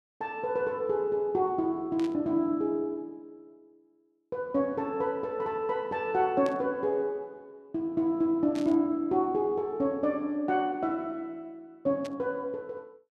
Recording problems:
static burst; 4 times, first at 2 s; peak -11 dB vs average level

